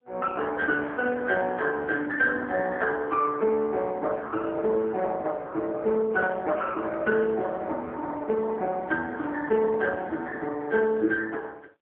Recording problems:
phone line; 260 Hz to 3 kHz, AMR-NB

